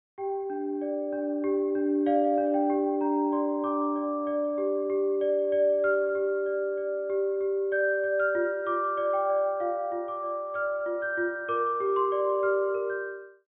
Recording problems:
treble cut off; nothing above 4 kHz

